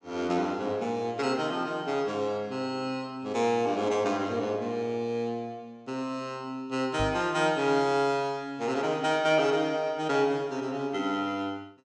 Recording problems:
microphone bump; at 7 s; peak -2 dB vs average level

